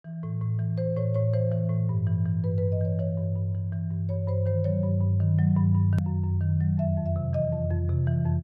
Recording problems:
hard cut with a click; at 6 s

